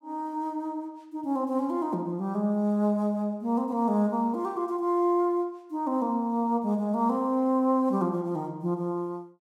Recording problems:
none

